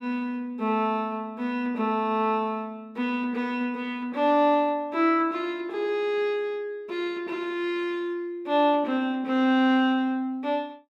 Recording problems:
none

